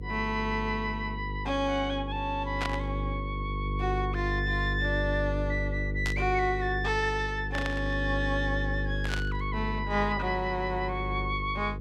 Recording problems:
hum; 50 Hz, harmonics up to 500 Hz, SNR 4 dB
burst of static; 4 times, first at 2.5 s; peak +1 dB vs average level

